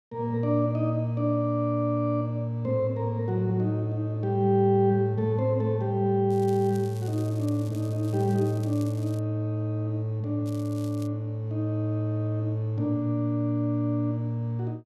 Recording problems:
crackling; from 6.5 to 9 s and at 10 s; loose cable, SNR 24 dB

